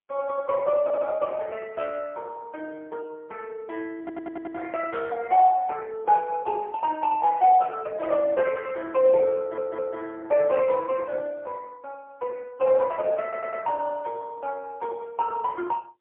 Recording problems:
telephone audio; 190 Hz to 3.3 kHz, AMR-NB, then MP3
audio stuttering; 4 times, first at 1 s

